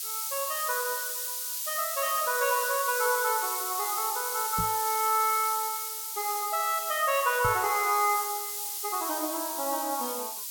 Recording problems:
background hiss; slope +7 dB per octave, SNR 2 dB
knock on the microphone; at 4.5 s and at 7.5 s; peak -2 dB vs average level

